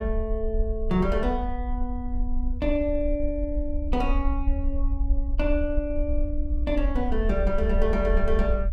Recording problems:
low-frequency rumble; below 52 Hz, SNR 1 dB

